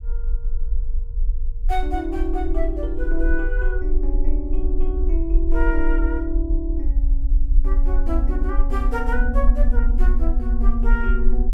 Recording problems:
low-frequency rumble; below 44 Hz, SNR -4 dB

